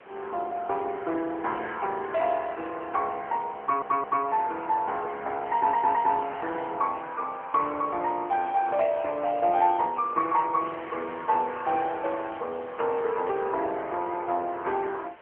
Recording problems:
telephone audio; 340 Hz to 3.2 kHz, AMR-NB
wind noise; below 2.2 kHz, SNR 22 dB
audio stuttering; at 3.5 s and at 5.5 s
crackle; from 5.5 to 6.5 s and from 12 to 13 s; loose cable, SNR 29 dB

